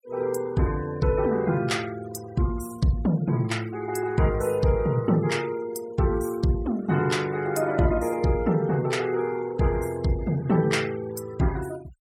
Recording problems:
noise reduction artefacts; signal-to-artefact ratio 21 dB

